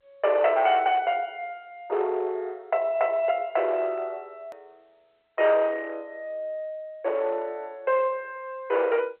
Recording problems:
telephone audio; 340 Hz to 3.1 kHz, G.711
distortion; hard clipping, uneven, signal-to-distortion ratio 11 dB
click at an edit; at 4.5 s

